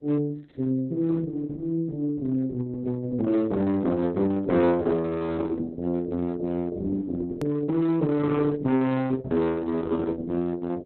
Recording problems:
codec artefacts; Opus, log-spectral distance 2 dB, nothing above 13.1 kHz
distortion; hard clipping, uneven, signal-to-distortion ratio 8 dB
edit click; at 7.5 s

